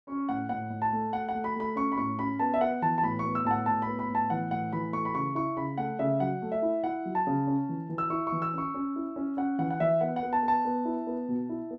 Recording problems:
none

